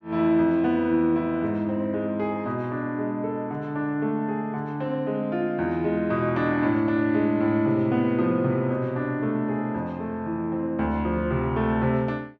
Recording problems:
none

